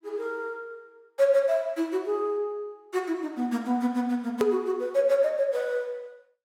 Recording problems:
hard cut with a click; at 4.5 s

